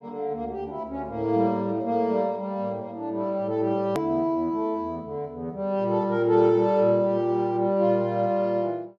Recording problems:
hard cut with a click; at 4 s

